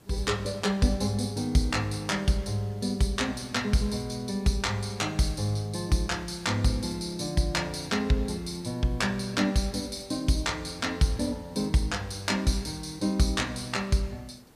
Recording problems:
hiss; slope -5 dB per octave, SNR 27 dB

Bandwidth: 15 kHz